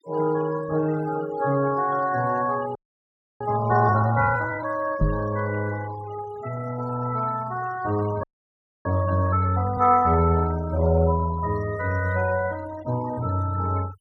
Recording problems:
denoising artefacts; signal-to-artefact ratio 18 dB
audio freezing; at 3 s for 0.5 s and at 8 s for 0.5 s
microphone bump; at 5 s; peak +4 dB vs average level

